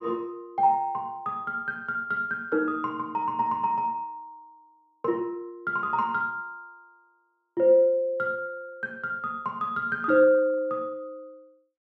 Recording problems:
none

